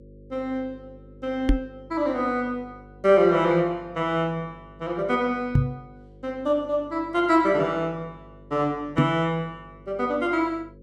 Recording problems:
hum; 50 Hz, harmonics up to 550 Hz, SNR 23 dB
microphone thump; at 1.5 s, at 5.5 s and at 9 s; peak +8 dB vs average level

